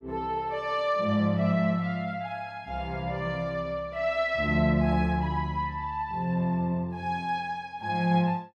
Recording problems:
none

